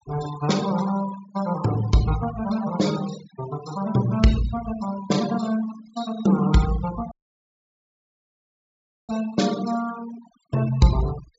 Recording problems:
treble missing; nothing above 8 kHz
denoising artefacts; signal-to-artefact ratio 14 dB
audio cutting out; at 7 s for 2 s

